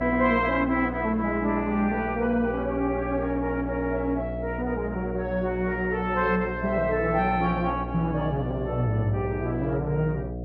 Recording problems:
low-pass filter; nothing above 6.1 kHz
hum; 60 Hz, harmonics up to 720 Hz, SNR 8 dB

